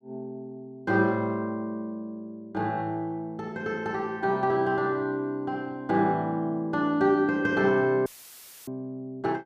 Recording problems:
dropout; at 8 s for 0.5 s; filled with static

